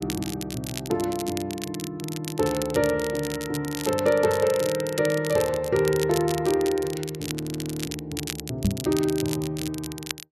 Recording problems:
crackling; vinyl, SNR 10 dB
frozen audio; at 7.5 s for 0.5 s
knock on the microphone; at 8.5 s; peak +6 dB vs average level

